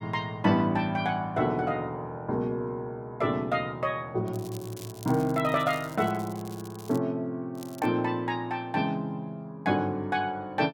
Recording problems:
crackling; from 4.5 to 7 s and at 7.5 s; loose cable, SNR 19 dB

